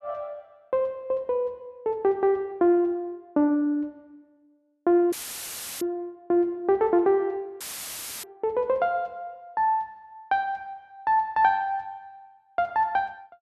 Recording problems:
audio cutting out; at 5 s for 0.5 s and at 7.5 s for 0.5 s; filled with static

